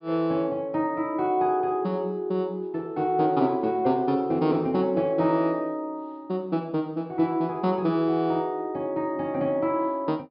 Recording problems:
treble missing; nothing above 5.5 kHz

